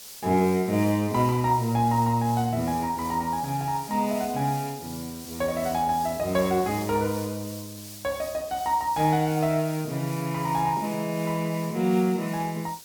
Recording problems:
background hiss; SNR 15 dB

